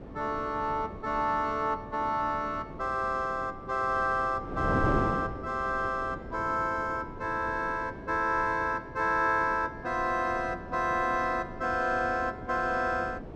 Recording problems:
wind on the microphone; below 470 Hz, SNR 10 dB

